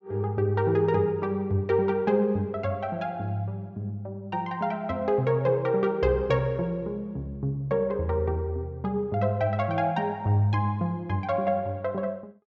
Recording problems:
low-pass filter; nothing above 7.7 kHz

